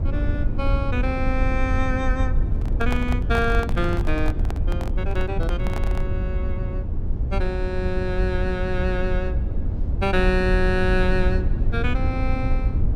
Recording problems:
low-frequency rumble; below 84 Hz, SNR -1 dB
microphone handling noise; from 2.5 to 6 s; peak 0 dB vs average level

